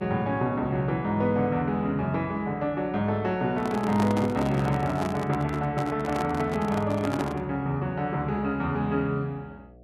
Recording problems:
hum; 60 Hz, harmonics up to 720 Hz, SNR 25 dB
microphone handling noise; from 3.5 to 7.5 s; peak -1 dB vs average level

